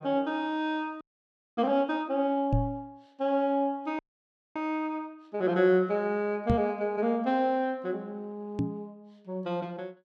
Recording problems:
audio freezing; at 1 s for 0.5 s and at 4 s for 0.5 s
microphone bump; at 2.5 s, at 6.5 s and at 8.5 s; peak +5 dB vs average level

